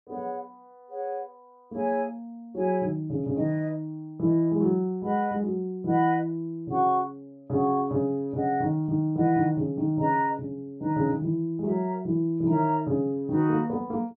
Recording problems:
none

